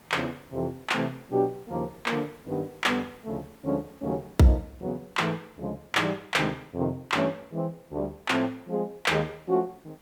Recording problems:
background hiss; slope -5 dB per octave, SNR 27 dB

